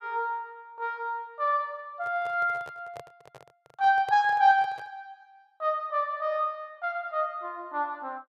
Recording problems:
handling noise; from 2 to 5 s; peak -10 dB vs average level

